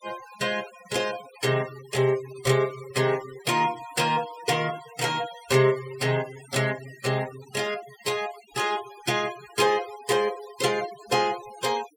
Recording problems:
noise reduction artefacts; signal-to-artefact ratio 16 dB

